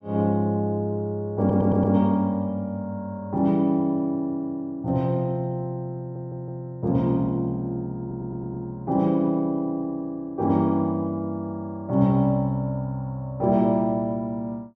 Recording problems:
audio stuttering; at 1.5 s, at 6 s and at 8 s

